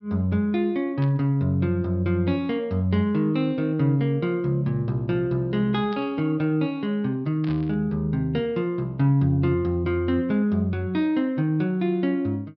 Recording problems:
treble cut off; nothing above 5.5 kHz
static burst; at 1 s, at 6 s and at 7.5 s; peak -14 dB vs average level

